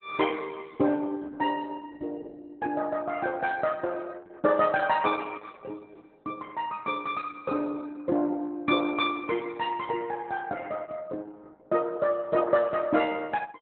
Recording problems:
lossy compression; Opus, log-spectral distance 3 dB, nothing above 3.6 kHz

